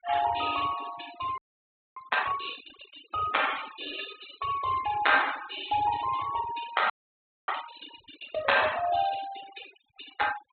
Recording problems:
treble cut off; nothing above 4 kHz
noise reduction artefacts; signal-to-artefact ratio 12 dB
audio freezing; at 1.5 s for 0.5 s and at 7 s for 0.5 s

